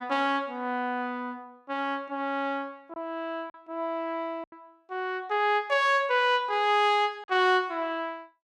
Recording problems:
packet loss; 2% of the sound replaced, filled with silence

